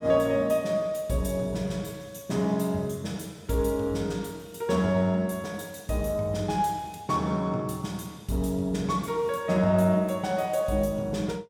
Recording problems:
none

